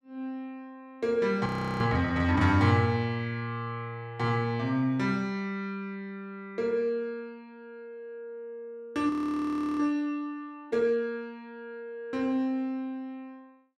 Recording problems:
frozen audio; at 1.5 s and at 9 s for 0.5 s

